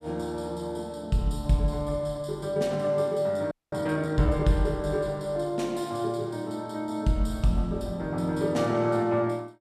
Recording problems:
audio freezing; at 3.5 s

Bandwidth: 14.5 kHz